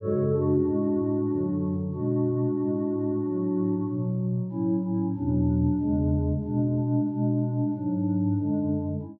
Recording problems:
none

